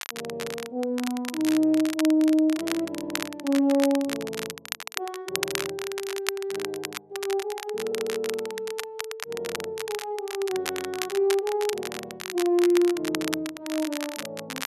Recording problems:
crackling; vinyl, SNR 8 dB
audio stuttering; at 3 s and at 8 s

